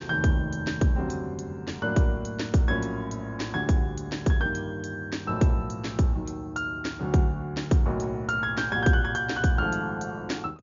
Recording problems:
low-pass filter; nothing above 7.1 kHz

